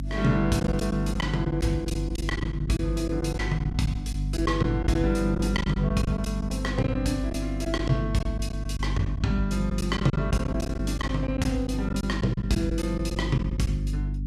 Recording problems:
hum; 50 Hz, harmonics up to 300 Hz, SNR 3 dB
packet loss; 9% of the sound replaced, filled with silence

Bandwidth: 14.5 kHz